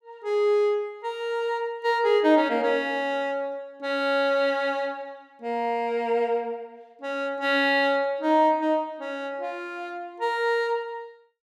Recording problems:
none

